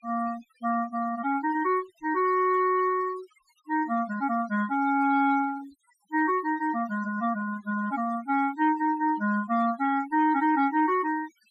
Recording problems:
noise reduction artefacts; signal-to-artefact ratio 21 dB

